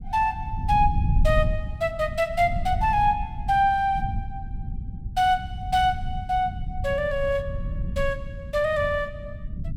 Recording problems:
rumble; below 100 Hz, SNR 7 dB

